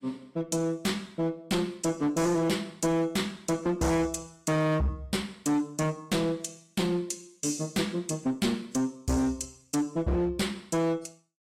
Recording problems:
codec artefacts; AAC, log-spectral distance 3 dB, nothing above 15.1 kHz
distorted audio; hard clipping, signal-to-distortion ratio 8 dB

